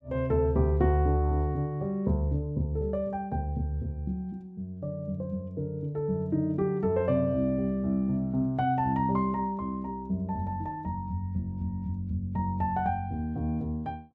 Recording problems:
none

